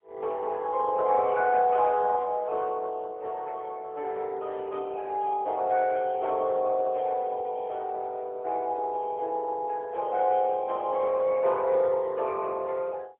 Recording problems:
phone line; 340 Hz to 3.1 kHz, AMR-NB, then MP3

